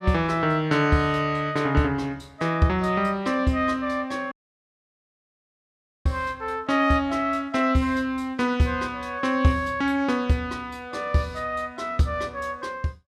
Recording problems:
dropout; at 4.5 s for 1.5 s

